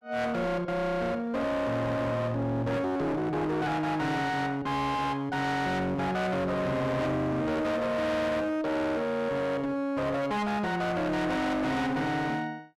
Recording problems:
distorted audio; hard clipping, signal-to-distortion ratio 7 dB

